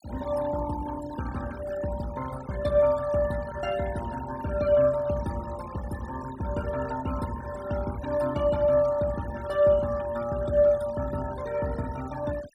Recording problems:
noise reduction artefacts; signal-to-artefact ratio 17 dB

